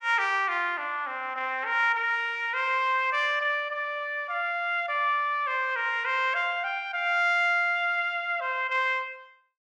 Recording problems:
none

